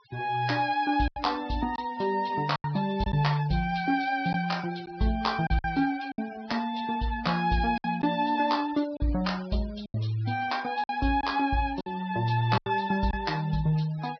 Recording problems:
treble cut off; nothing above 5.5 kHz
noise reduction artefacts; signal-to-artefact ratio 20 dB
packet loss; 5% of the sound replaced, filled with silence

